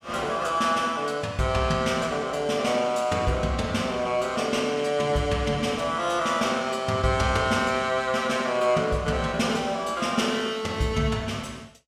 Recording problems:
none

